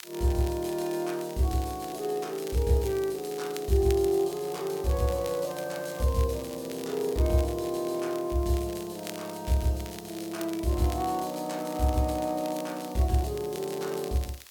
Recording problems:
background hiss; slope +2 dB per octave, SNR 20 dB
crackle; vinyl, SNR 17 dB

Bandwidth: 17.5 kHz